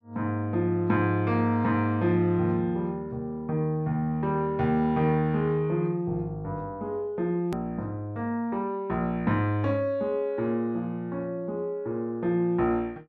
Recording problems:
click at an edit; at 7.5 s

